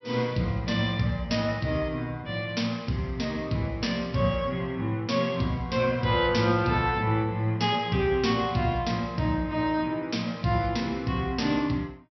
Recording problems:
treble missing; nothing above 5.8 kHz

